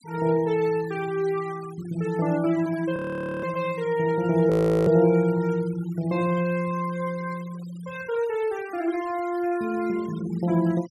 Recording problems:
denoising artefacts; signal-to-artefact ratio 22 dB
frozen audio; at 3 s and at 4.5 s

